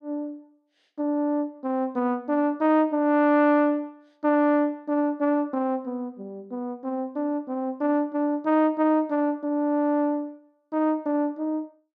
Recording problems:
none

